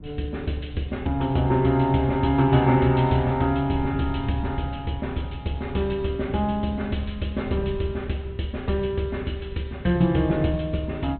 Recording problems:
treble missing; nothing above 4 kHz
wind noise; below 140 Hz, SNR 15 dB

